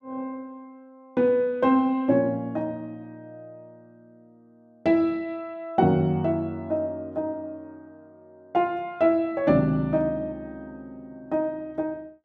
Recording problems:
none

